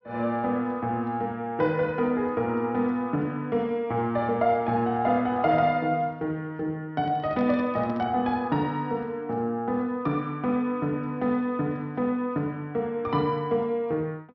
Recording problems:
treble cut off; nothing above 5.9 kHz
microphone handling noise; from 7 to 8 s; peak -11 dB vs average level

